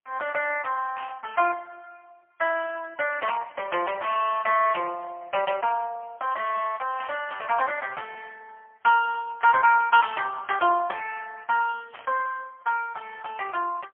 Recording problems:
phone line; 370 Hz to 3.1 kHz, AMR-NB, then MP3
burst of static; 5 times, first at 1 s; peak -10 dB vs average level

